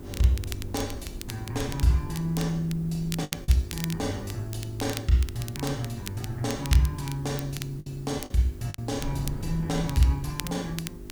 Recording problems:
hum; 50 Hz, harmonics up to 400 Hz, SNR 16 dB
hiss; SNR 27 dB
wind noise; below 130 Hz, SNR 14 dB
crackle; vinyl, SNR 12 dB
packet loss; 3% of the sound replaced, filled with the last packet

